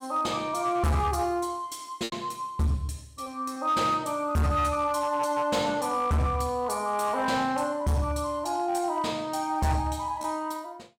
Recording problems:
distortion; hard clipping, signal-to-distortion ratio 10 dB
lost packets; 1.5% of the sound replaced, filled with repeated pitch periods

